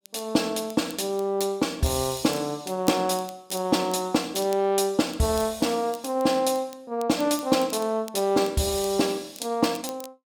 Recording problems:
crackle; vinyl, SNR 20 dB

